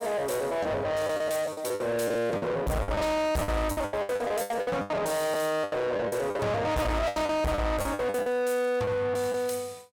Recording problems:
distorted audio; soft clipping, signal-to-distortion ratio 6 dB
packet loss; 16% of the sound replaced, filled with the last packet

